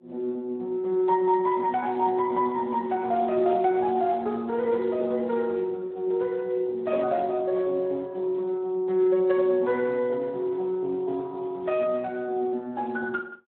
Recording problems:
telephone audio; 280 Hz to 2.8 kHz, Speex

